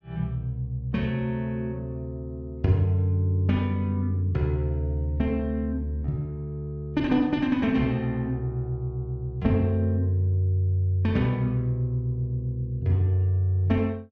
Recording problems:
none

